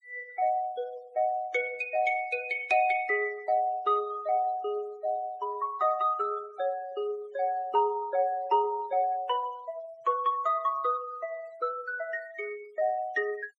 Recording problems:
denoising artefacts; signal-to-artefact ratio 22 dB

